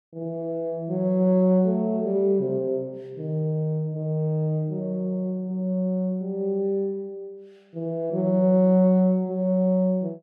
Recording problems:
none

